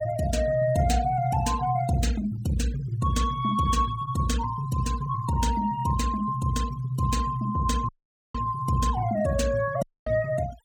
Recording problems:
noise reduction artefacts; signal-to-artefact ratio 17 dB
audio cutting out; at 8 s and at 10 s

